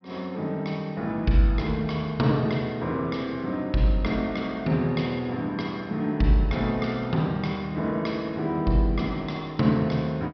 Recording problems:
treble missing; nothing above 5.5 kHz

